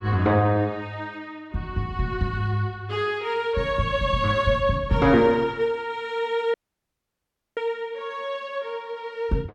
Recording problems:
dropout; at 6.5 s for 1 s

